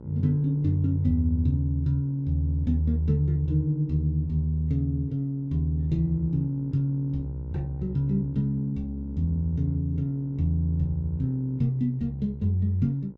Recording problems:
hum; 60 Hz, harmonics up to 1 kHz, SNR 20 dB

